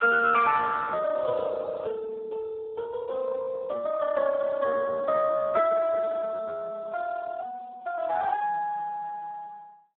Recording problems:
phone line; 370 Hz to 2.8 kHz, Speex

